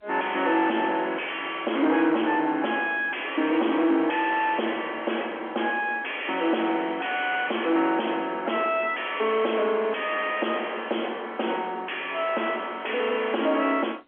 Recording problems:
telephone audio; 240 Hz to 3.3 kHz, G.711
distortion; soft clipping, signal-to-distortion ratio 5 dB

